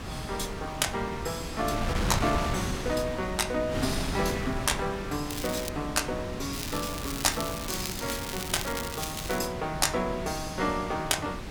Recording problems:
wind on the microphone; below 990 Hz, SNR 5 dB
crackle; at 5.5 s and from 6.5 to 9.5 s; loose cable, SNR 6 dB

